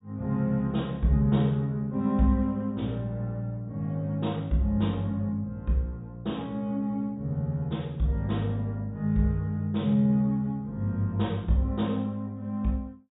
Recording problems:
treble missing; nothing above 4 kHz

